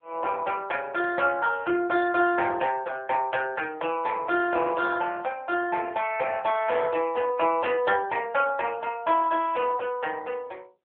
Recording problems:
telephone audio; 300 Hz to 3.3 kHz, AMR-NB

